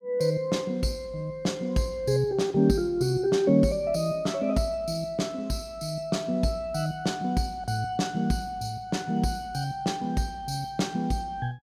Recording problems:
none

